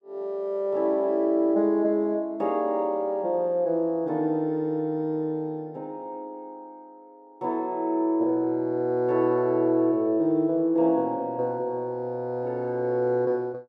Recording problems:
none

